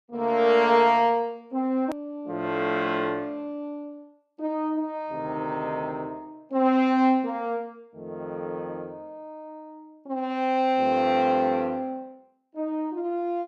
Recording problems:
click at an edit; at 2 s

